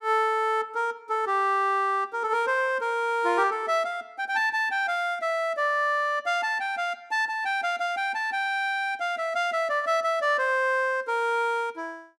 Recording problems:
none

